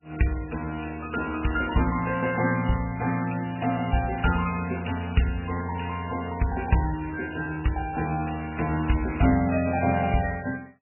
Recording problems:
codec artefacts; MP3, log-spectral distance 7 dB, nothing above 2.8 kHz

